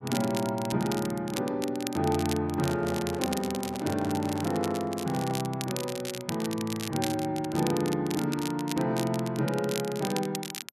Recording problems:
crackle; vinyl, SNR 9 dB
handling noise; from 2.5 to 5.5 s; peak -7 dB vs average level

